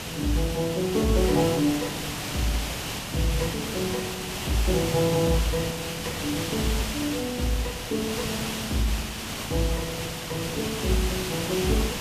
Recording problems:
hiss; slope -2 dB per octave, SNR 3 dB

